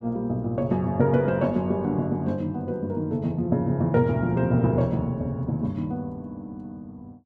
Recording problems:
none

